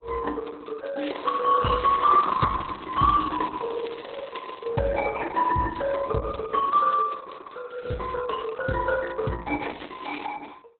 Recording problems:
codec artefacts; AAC, then Opus, log-spectral distance 7 dB, nothing above 3.7 kHz
crackling; from 1 to 4.5 s and at 9.5 s; loose cable, SNR 19 dB

